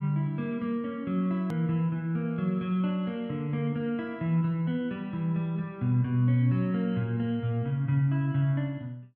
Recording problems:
click at an edit; at 1.5 s

